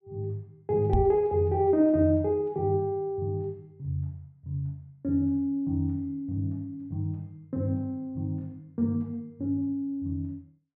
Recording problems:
knock on the microphone; at 1 s; peak +6 dB vs average level

